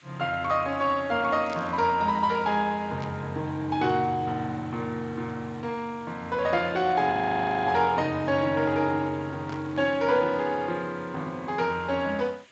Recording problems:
lossy codec; Speex, log-spectral distance 5 dB, nothing above 7.3 kHz
background hiss; SNR 27 dB
static burst; at 1.5 s, at 3 s and at 9.5 s; peak -11 dB vs average level
frozen audio; at 7 s for 0.5 s

